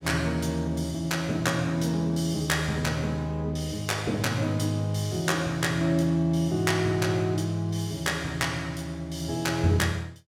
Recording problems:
none

